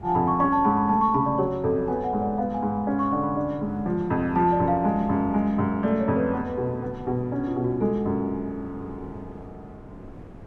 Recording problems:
wind on the microphone; below 350 Hz, SNR 18 dB

